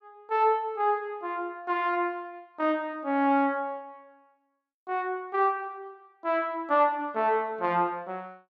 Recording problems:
none

